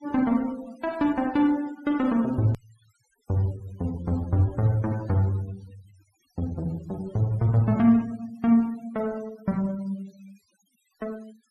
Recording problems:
noise reduction artefacts; signal-to-artefact ratio 25 dB
hard cut with a click; at 2.5 s

